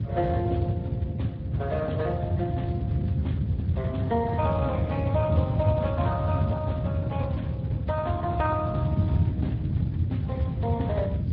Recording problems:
lossy compression; AAC, then Speex, log-spectral distance 2 dB
hum; 50 Hz, harmonics up to 600 Hz, SNR 17 dB
low-frequency rumble; below 190 Hz, SNR 11 dB
wind on the microphone; below 160 Hz, SNR -3 dB

